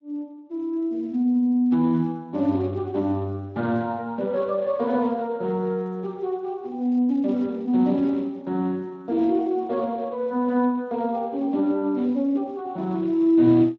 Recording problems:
lossy compression; Speex, then Speex, log-spectral distance 2 dB

